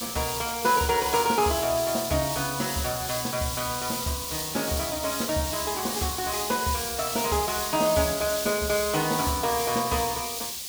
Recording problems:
hiss; SNR 3 dB

